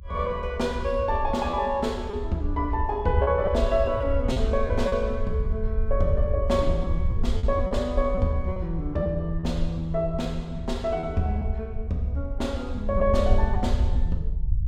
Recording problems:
low-frequency rumble; below 70 Hz, SNR 3 dB
packet loss; 4% of the sound replaced, filled with repeated pitch periods

